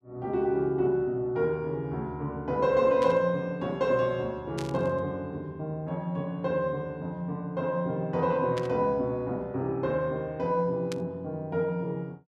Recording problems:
burst of static; 4 times, first at 3 s; peak -6 dB vs average level

